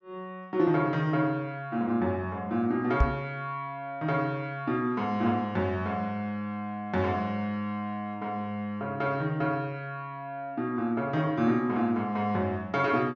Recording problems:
low-pass filter; nothing above 8 kHz
microphone bump; at 3 s; peak +8 dB vs average level

